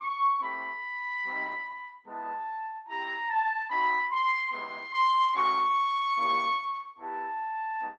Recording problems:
lossy codec; Opus, log-spectral distance 2 dB

